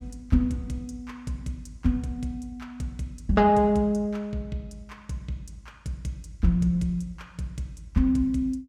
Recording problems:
none

